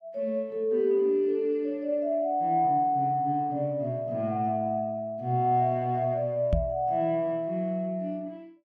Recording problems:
microphone thump; at 6.5 s; peak +4 dB vs average level

